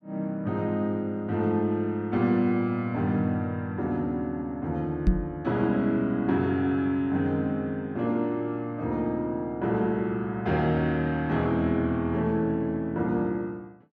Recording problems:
microphone thump; at 5 s; peak +8 dB vs average level

